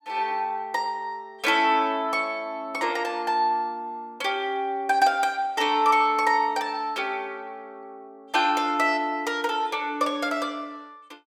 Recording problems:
none

